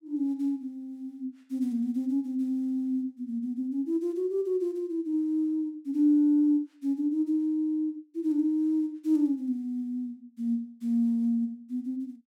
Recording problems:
none

